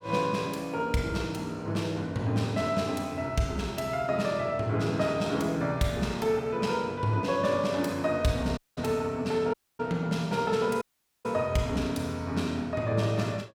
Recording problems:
dropout; at 8.5 s, at 9.5 s and at 11 s

